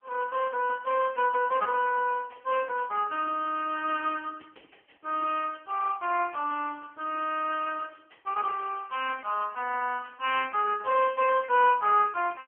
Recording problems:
telephone audio; 260 Hz to 2.9 kHz, AMR-NB

